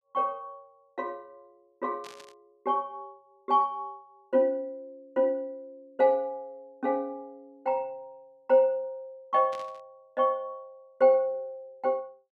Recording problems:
static burst; at 2 s and at 9.5 s; peak -13 dB vs average level

